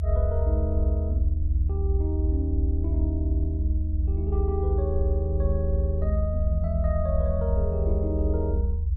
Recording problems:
low-frequency rumble; below 78 Hz, strongest tone 78 Hz, SNR -6 dB

